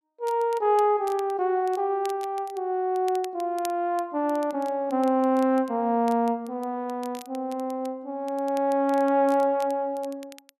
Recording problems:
crackle; vinyl, SNR 24 dB

